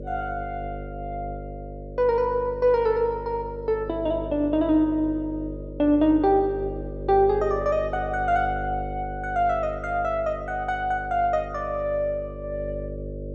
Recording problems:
hum; 50 Hz, harmonics up to 600 Hz, SNR 11 dB

